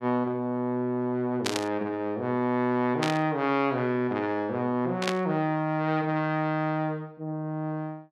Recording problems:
static burst; at 1.5 s, at 3 s and at 5 s; peak +4 dB vs average level

